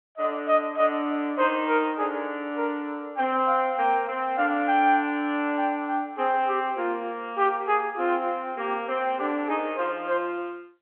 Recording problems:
phone line; 220 Hz to 3.4 kHz, G.711

